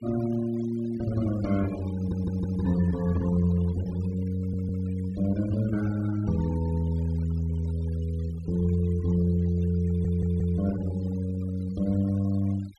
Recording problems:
denoising artefacts; signal-to-artefact ratio 20 dB
audio stuttering; at 2 s, at 4.5 s and at 10 s

